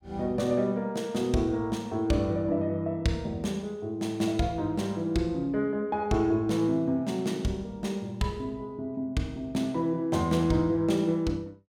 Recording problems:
none

